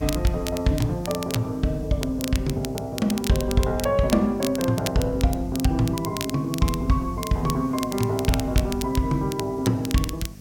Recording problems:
hum; 50 Hz, harmonics up to 550 Hz, SNR 17 dB
background hiss; SNR 27 dB
crackling; vinyl, SNR 11 dB

